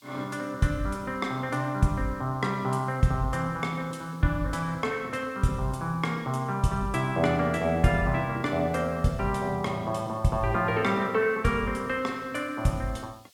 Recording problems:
background hiss; SNR 30 dB

